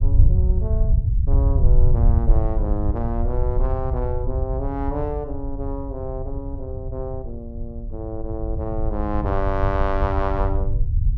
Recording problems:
low-frequency rumble; below 78 Hz, SNR -5 dB

